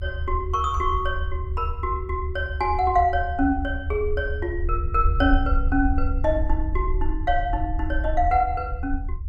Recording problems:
low-frequency rumble; below 74 Hz, SNR 3 dB

